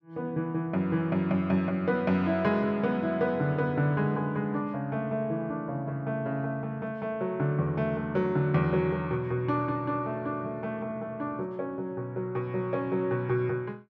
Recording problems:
none

